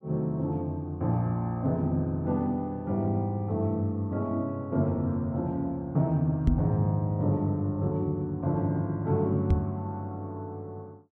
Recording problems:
microphone bump; at 6.5 s and at 9.5 s; peak +8 dB vs average level

